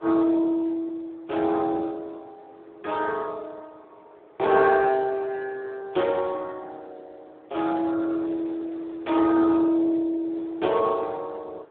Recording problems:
telephone audio; 280 Hz to 2.4 kHz, Speex
wind noise; below 990 Hz, SNR 25 dB

